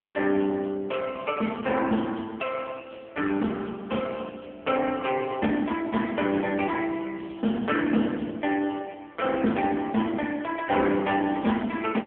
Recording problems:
telephone audio; 86 Hz to 3.3 kHz, AMR-NB

